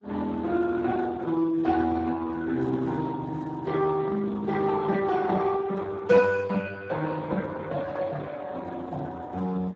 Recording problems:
lossy compression; Opus, then Speex, log-spectral distance 3 dB, nothing above 7.6 kHz

